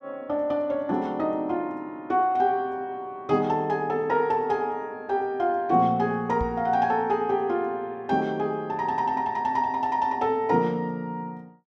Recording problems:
knock on the microphone; at 6.5 s; peak -3 dB vs average level

